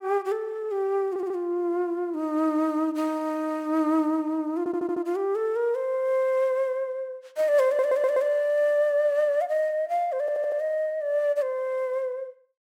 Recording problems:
audio stuttering; 4 times, first at 1 s

